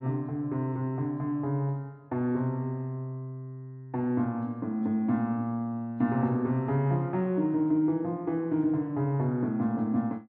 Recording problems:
none

